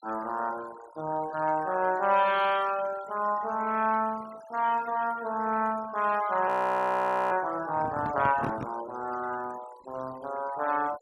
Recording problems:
denoising artefacts; signal-to-artefact ratio 19 dB
frozen audio; at 6.5 s for 1 s
handling noise; from 7.5 to 8.5 s; peak -2 dB vs average level

